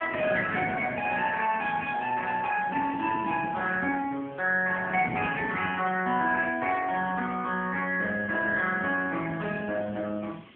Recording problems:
phone line; 190 Hz to 3.3 kHz, AMR-NB
background hiss; SNR 27 dB
wind on the microphone; below 360 Hz, SNR 13 dB

